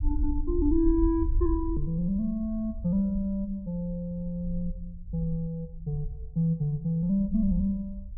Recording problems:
rumble; below 58 Hz, SNR 7 dB

